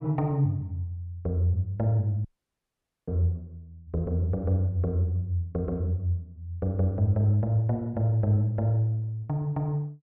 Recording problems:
audio cutting out; at 2.5 s for 1 s

